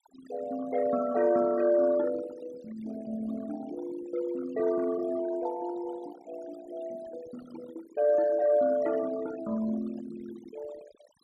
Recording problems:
denoising artefacts; signal-to-artefact ratio 17 dB

